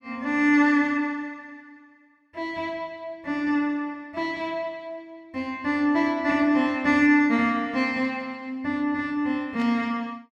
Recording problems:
static burst; at 9.5 s; peak -12 dB vs average level

